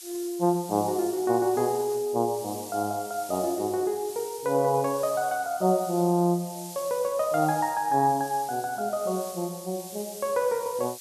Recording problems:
hiss; slope +6 dB per octave, SNR 14 dB

